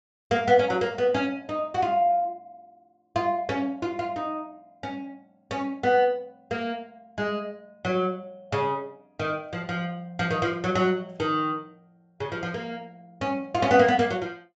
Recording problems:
low-pass filter; nothing above 8 kHz

